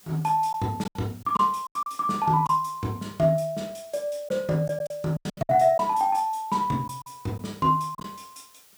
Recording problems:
hiss; slope 0 dB per octave, SNR 26 dB
lost packets; 8% of the sound replaced, filled with silence

